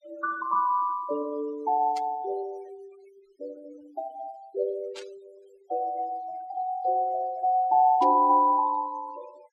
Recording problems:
noise reduction artefacts; signal-to-artefact ratio 26 dB
static burst; at 2 s, at 5 s and at 8 s; peak -12 dB vs average level

